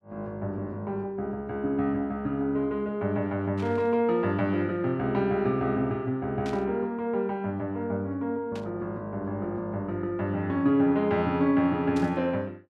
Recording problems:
static burst; 4 times, first at 3.5 s; peak -11 dB vs average level

